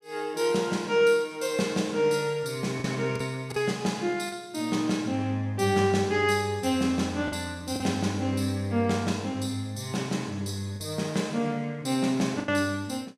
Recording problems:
packet loss; 3% of the sound replaced, filled with the last packet

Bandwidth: 15 kHz